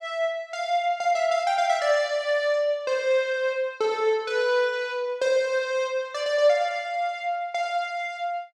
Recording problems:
none

